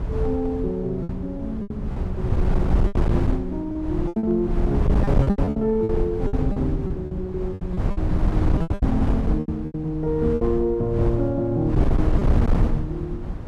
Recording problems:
distortion; hard clipping, signal-to-distortion ratio 12 dB
wind noise; below 150 Hz, SNR 0 dB
lost packets; 11% of the sound replaced, filled with repeated pitch periods

